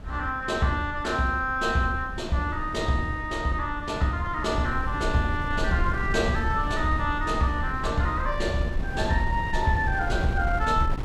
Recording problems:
wind noise; below 110 Hz, SNR 7 dB

